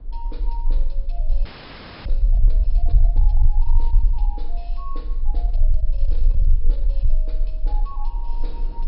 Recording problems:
treble cut off; nothing above 5.3 kHz
distortion; soft clipping, signal-to-distortion ratio 12 dB
low-frequency rumble; below 38 Hz, strongest tone 22 Hz, SNR -19 dB
wind noise; below 330 Hz, SNR 10 dB
audio freezing; at 1.5 s for 0.5 s

